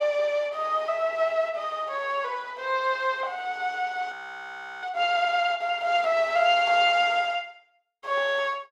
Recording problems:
frozen audio; at 4 s for 0.5 s

